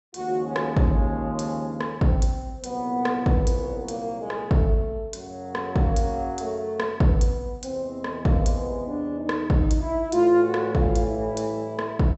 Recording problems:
treble missing; nothing above 7.9 kHz

